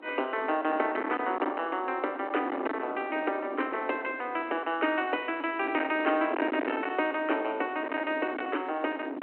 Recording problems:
telephone audio; 240 Hz to 3.1 kHz, G.726
distorted audio; hard clipping, signal-to-distortion ratio 17 dB
wind on the microphone; below 1.1 kHz, SNR 8 dB

